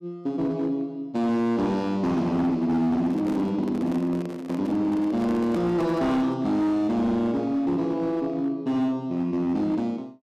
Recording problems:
distortion; hard clipping, signal-to-distortion ratio 11 dB
handling noise; from 3 to 6.5 s; peak -8 dB vs average level

